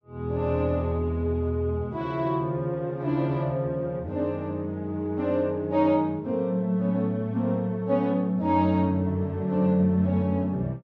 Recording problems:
none

